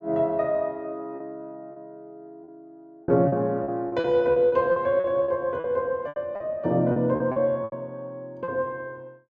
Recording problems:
lost packets; 10% of the sound replaced, filled with repeated pitch periods

